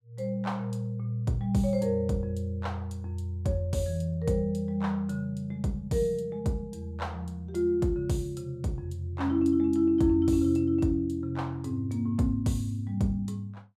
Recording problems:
none

